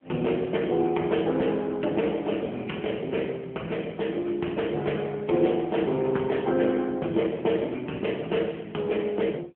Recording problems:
phone line; 190 Hz to 3.3 kHz, AMR-NB

